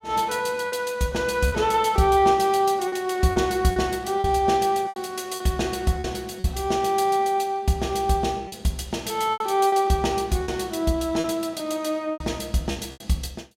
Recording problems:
lost packets; 7% of the sound replaced, filled with repeated pitch periods

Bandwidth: 16 kHz